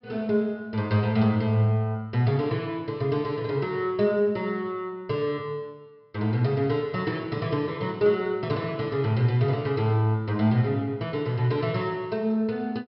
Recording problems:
treble cut off; nothing above 5.3 kHz

